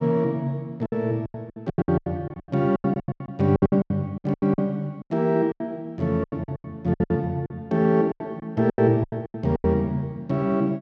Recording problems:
lost packets; 20% of the sound replaced, filled with silence

